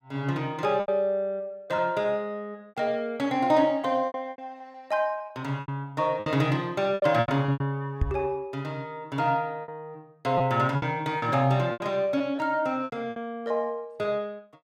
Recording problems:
packet loss; 9% of the sound replaced, filled with repeated pitch periods
microphone thump; at 8 s; peak +5 dB vs average level

